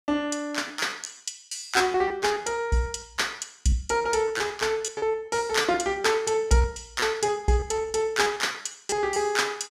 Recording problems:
lost packets; 13% of the sound replaced, filled with repeated pitch periods

